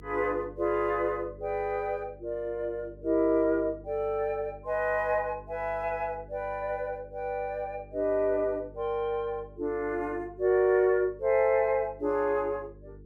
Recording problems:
hum; 50 Hz, harmonics up to 450 Hz, SNR 21 dB

